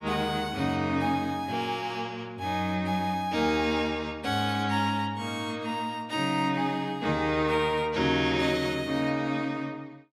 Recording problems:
none

